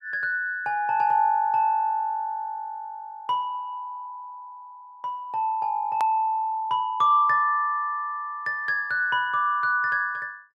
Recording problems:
click at an edit; at 6 s

